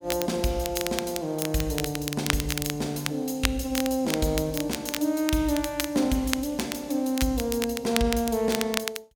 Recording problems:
crackling; vinyl, SNR 6 dB

